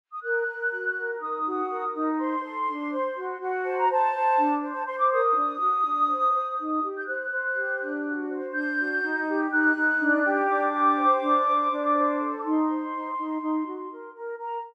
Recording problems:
none

